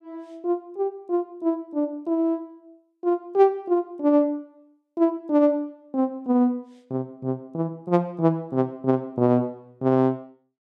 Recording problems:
none

